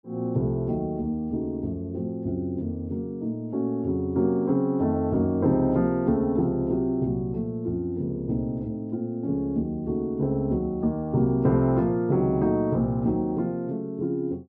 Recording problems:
none

